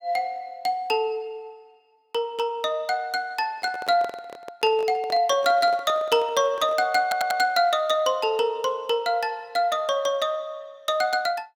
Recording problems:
handling noise; from 3.5 to 7 s; peak -9 dB vs average level
stutter; at 7 s

